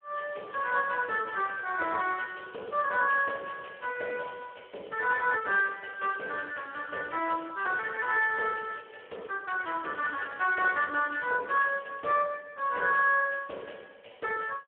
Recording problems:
telephone audio; 300 Hz to 2.9 kHz, Speex

